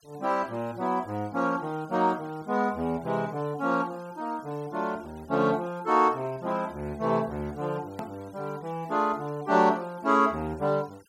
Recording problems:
denoising artefacts; signal-to-artefact ratio 26 dB
hard cut with a click; at 8 s

